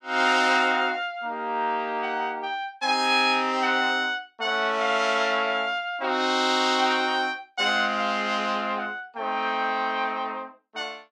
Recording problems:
none

